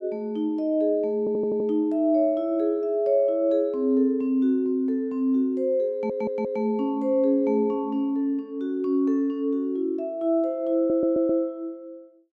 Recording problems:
stutter; at 1 s, at 6 s and at 11 s

